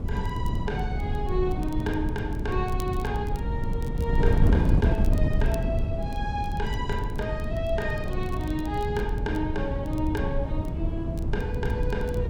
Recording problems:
wind noise; below 140 Hz, SNR -3 dB
crackling; vinyl, SNR 22 dB

